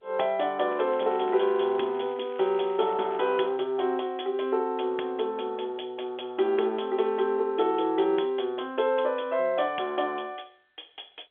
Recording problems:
phone line; 300 Hz to 3.5 kHz, G.711
crackling; from 0.5 to 3 s; loose cable, SNR 24 dB

